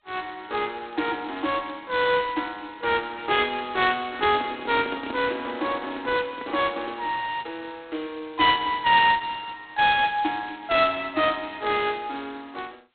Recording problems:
telephone audio; 240 Hz to 3.7 kHz, G.726
handling noise; from 4 to 7 s; peak -5 dB vs average level

